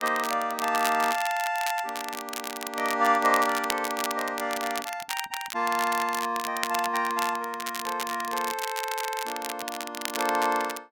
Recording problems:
crackle; vinyl, SNR 7 dB

